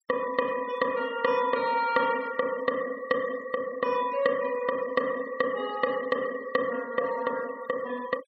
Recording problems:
noise reduction artefacts; signal-to-artefact ratio 19 dB

